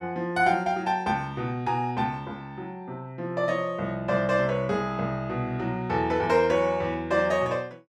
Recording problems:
none

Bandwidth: 13.5 kHz